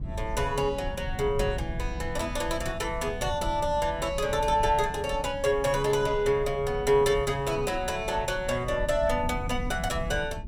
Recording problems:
low-frequency rumble; below 120 Hz, SNR 10 dB

